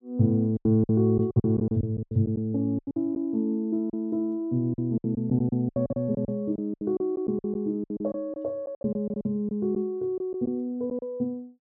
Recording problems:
packet loss; 14% of the sound replaced, filled with silence

